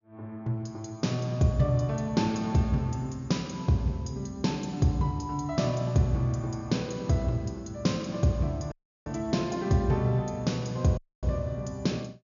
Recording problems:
low-pass filter; nothing above 7 kHz
dropout; at 8.5 s and at 11 s

